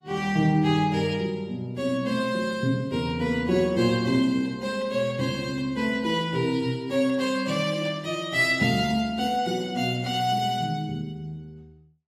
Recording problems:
lossy codec; AAC, log-spectral distance 2 dB, nothing above 15.5 kHz

